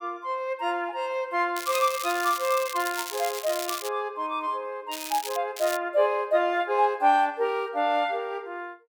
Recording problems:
crackling; from 1.5 to 4 s, at 5 s and at 5.5 s; loose cable, SNR 9 dB

